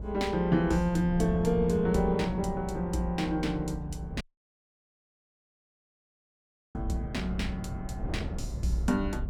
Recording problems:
rumble; below 82 Hz, strongest tone 58 Hz, SNR 10 dB
wind noise; below 360 Hz, SNR 13 dB
audio cutting out; at 4 s for 2.5 s

